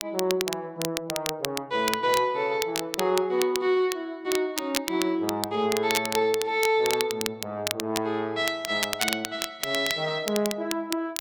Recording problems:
crackling; vinyl, SNR 6 dB

